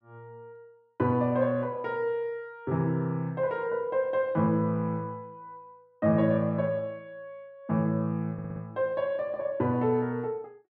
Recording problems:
audio stuttering; at 8.5 s

